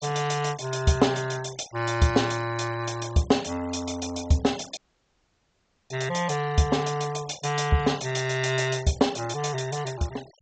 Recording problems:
treble cut off; nothing above 8 kHz
noise reduction artefacts; signal-to-artefact ratio 19 dB
audio cutting out; at 5 s for 1 s

